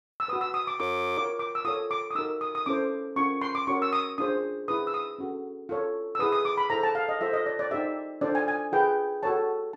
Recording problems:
frozen audio; at 1 s

